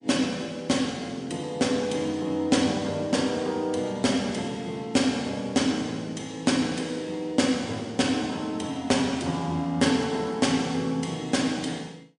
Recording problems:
codec artefacts; MP3, log-spectral distance 3 dB

